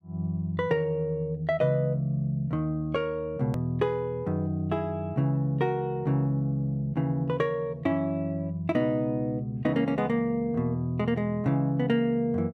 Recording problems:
edit click; at 3.5 s

